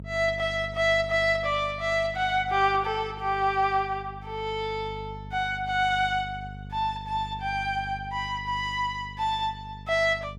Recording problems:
electrical hum; 50 Hz, harmonics up to 500 Hz, SNR 15 dB

